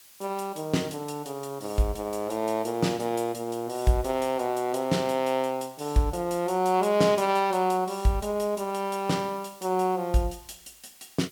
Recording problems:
background hiss; slope +2 dB per octave, SNR 23 dB

